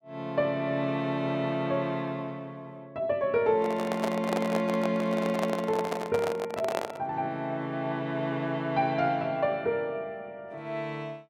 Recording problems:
microphone handling noise; from 3.5 to 7 s; peak +2 dB vs average level

